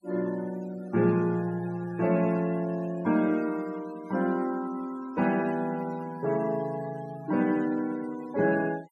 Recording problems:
noise reduction artefacts; signal-to-artefact ratio 20 dB

